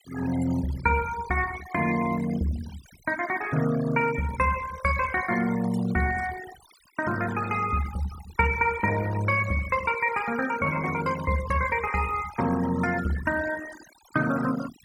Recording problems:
denoising artefacts; signal-to-artefact ratio 14 dB

